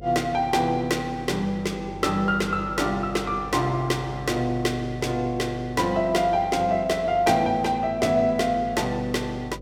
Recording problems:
electrical hum; 50 Hz, harmonics up to 550 Hz, SNR 17 dB

